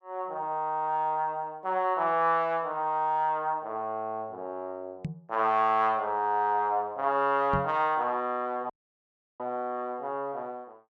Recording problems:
microphone bump; at 5 s and at 7.5 s; peak -1 dB vs average level
dropout; at 8.5 s for 0.5 s

